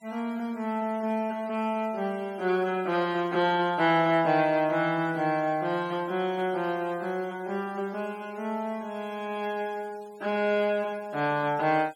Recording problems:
noise reduction artefacts; signal-to-artefact ratio 25 dB

